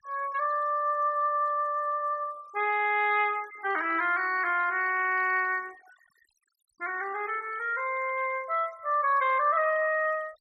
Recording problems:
noise reduction artefacts; signal-to-artefact ratio 25 dB

